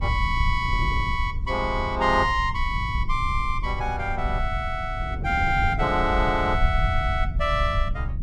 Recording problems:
low-frequency rumble; below 80 Hz, SNR 4 dB
wind on the microphone; below 260 Hz, SNR 15 dB

